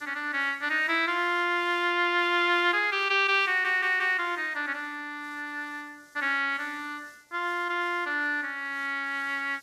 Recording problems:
background hiss; SNR 29 dB
audio stuttering; at 3.5 s

